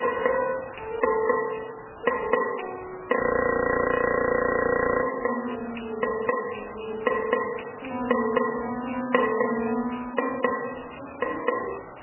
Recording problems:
codec artefacts; MP3, log-spectral distance 13 dB, nothing above 2.9 kHz
hiss; SNR 17 dB
frozen audio; at 3 s for 2 s

